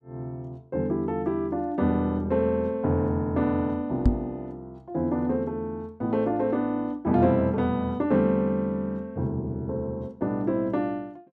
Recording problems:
knock on the microphone; at 4 s; peak +8 dB vs average level

